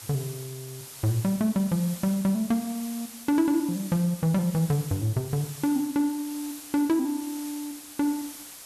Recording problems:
hiss; slope 0 dB per octave, SNR 14 dB

